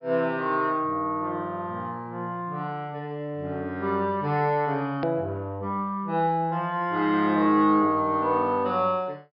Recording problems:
treble cut off; nothing above 5.5 kHz
click at an edit; at 5 s

